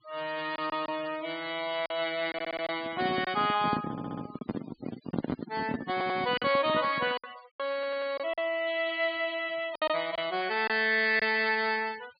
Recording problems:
treble cut off; nothing above 4.9 kHz
noise reduction artefacts; signal-to-artefact ratio 19 dB
packet loss; 5% of the sound replaced, filled with silence
audio stuttering; 4 times, first at 2.5 s
handling noise; from 2.5 to 7 s; peak +2 dB vs average level

